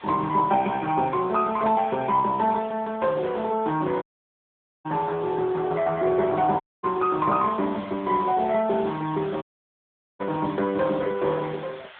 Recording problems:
telephone audio; 220 Hz to 3.6 kHz, AMR-NB
hiss; SNR 20 dB
audio cutting out; at 4 s for 1 s, at 6.5 s and at 9.5 s for 1 s

